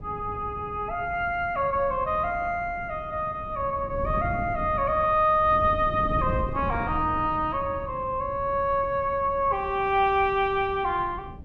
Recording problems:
wind noise; below 200 Hz, SNR 12 dB

